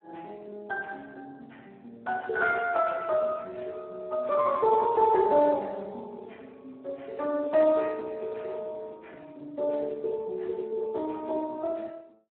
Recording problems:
phone line; 280 Hz to 2.8 kHz, Speex

